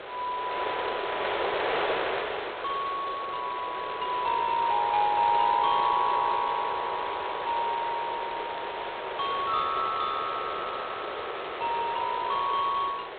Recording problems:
phone line; 990 Hz to 2.7 kHz, G.726
hiss; SNR 25 dB
wind noise; below 2.1 kHz, SNR 4 dB

